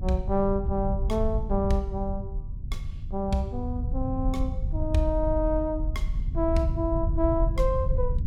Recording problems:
rumble; below 78 Hz, SNR 2 dB

